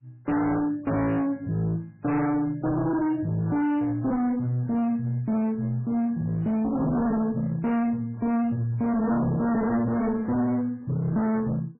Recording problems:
codec artefacts; AAC, then MP3, log-spectral distance 2 dB, nothing above 2.6 kHz
distortion; hard clipping, signal-to-distortion ratio 6 dB

